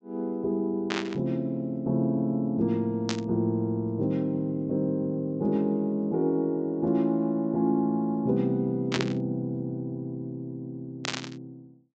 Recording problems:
low-pass filter; nothing above 8 kHz
static burst; 4 times, first at 1 s; peak +3 dB vs average level

